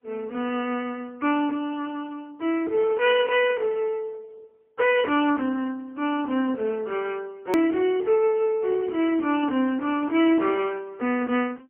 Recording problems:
phone line; 220 Hz to 3.2 kHz, AMR-NB, then MP3
hard cut with a click; at 7.5 s

